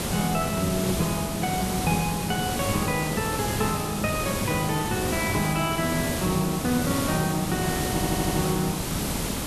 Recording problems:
hiss; SNR 1 dB
audio stuttering; at 8 s

